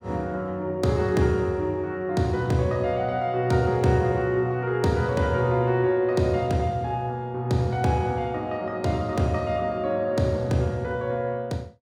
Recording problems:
none

